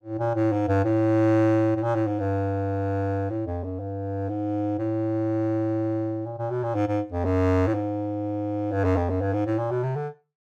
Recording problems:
none

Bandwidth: 14.5 kHz